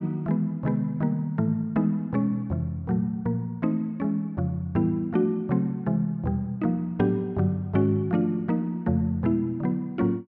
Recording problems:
none

